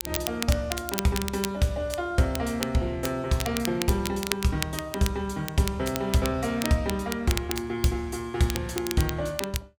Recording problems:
crackle; vinyl, SNR 8 dB

